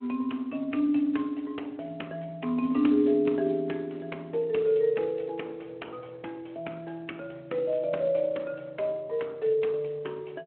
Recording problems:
phone line; 190 Hz to 3.3 kHz, Speex

